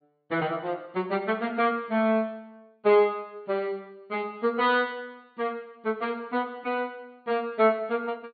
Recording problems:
treble missing; nothing above 4.6 kHz

